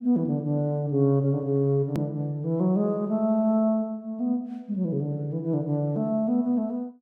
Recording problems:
click at an edit; at 2 s

